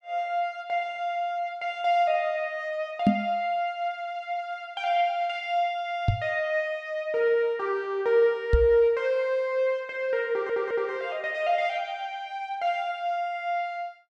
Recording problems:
knock on the microphone; at 3 s, at 6 s and at 8.5 s; peak +9 dB vs average level
stutter; at 10 s

